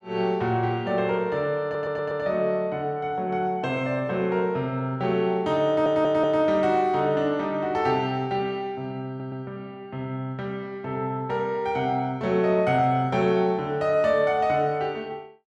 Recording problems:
audio stuttering; at 1.5 s, at 5.5 s and at 9 s

